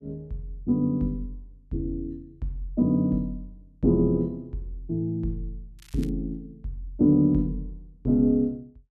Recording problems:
crackle; at 6 s; loose cable, SNR 26 dB

